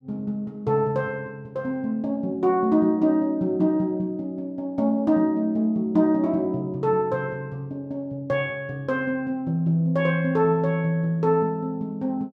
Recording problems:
none

